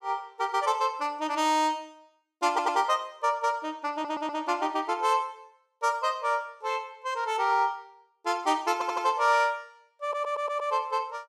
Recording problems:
audio stuttering; 4 times, first at 2.5 s

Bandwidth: 14.5 kHz